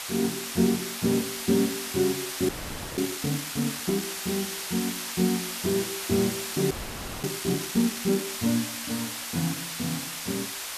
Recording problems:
background hiss; SNR 3 dB
frozen audio; at 2.5 s and at 6.5 s for 0.5 s

